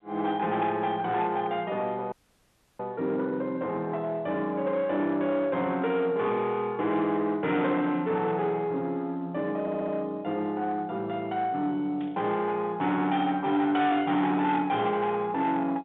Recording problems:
phone line; 170 Hz to 3.7 kHz, G.711
distortion; soft clipping, signal-to-distortion ratio 11 dB
audio cutting out; at 2 s for 0.5 s
audio stuttering; at 9.5 s
burst of static; at 12 s; peak -17 dB vs average level

